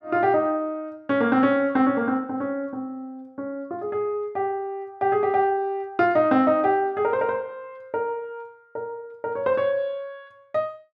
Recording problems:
none

